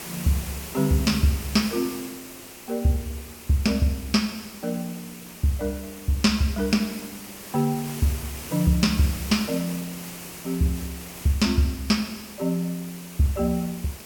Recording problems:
background hiss; slope -3 dB per octave, SNR 13 dB

